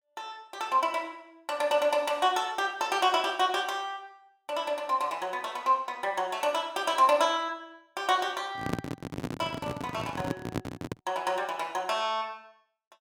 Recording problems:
handling noise; from 8.5 to 11 s; peak +2 dB vs average level

